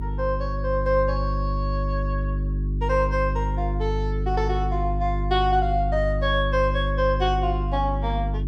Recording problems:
hum; 50 Hz, harmonics up to 400 Hz, SNR 1 dB

